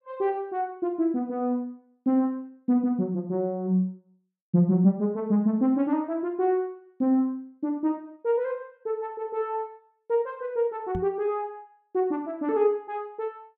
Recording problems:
knock on the microphone; at 11 s; peak -3 dB vs average level

